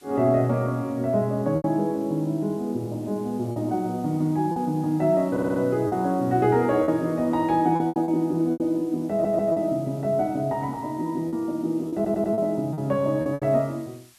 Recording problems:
background hiss; slope +3 dB per octave, SNR 28 dB
lost packets; 6% of the sound replaced, filled with repeated pitch periods
stutter; at 5.5 s, at 9 s and at 12 s

